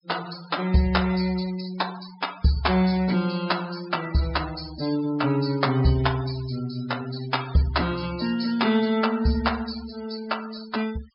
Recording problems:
treble cut off; nothing above 5.5 kHz
denoising artefacts; signal-to-artefact ratio 16 dB

